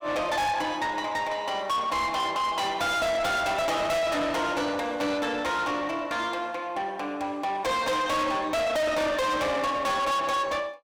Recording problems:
distortion; soft clipping, signal-to-distortion ratio 6 dB

